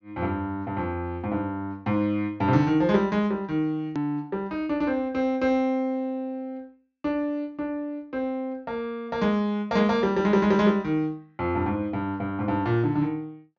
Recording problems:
treble missing; nothing above 7.1 kHz
edit click; at 4 s

